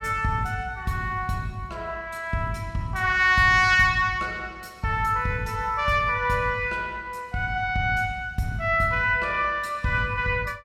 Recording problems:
none

